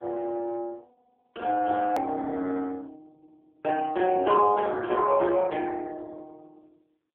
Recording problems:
phone line; 280 Hz to 3.3 kHz, AMR-NB
edit click; at 2 s

